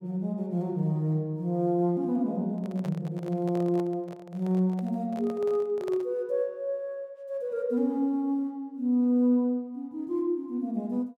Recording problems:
microphone handling noise; from 2.5 to 6 s; peak -9 dB vs average level

